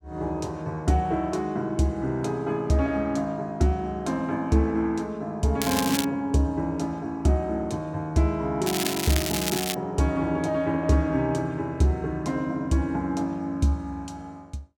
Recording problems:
crackle; at 5.5 s and from 8.5 to 10 s; loose cable, SNR 3 dB

